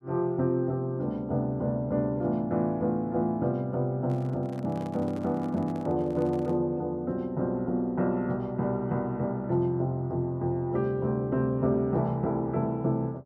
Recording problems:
handling noise; from 4 to 6.5 s; peak -11 dB vs average level

